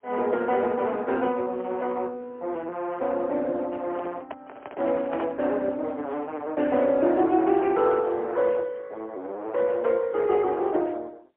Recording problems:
telephone audio; 260 Hz to 3.7 kHz, AMR-NB, then MP3
microphone handling noise; from 4 to 5.5 s; peak -5 dB vs average level

